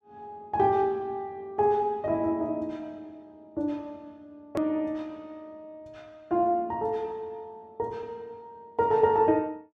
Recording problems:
edit click; at 4.5 s

